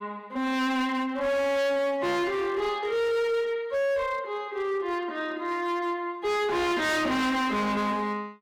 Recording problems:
distorted audio; hard clipping, signal-to-distortion ratio 6 dB

